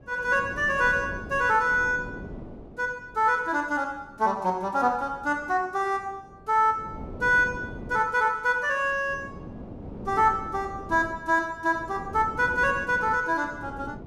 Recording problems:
wind on the microphone; below 410 Hz, SNR 16 dB

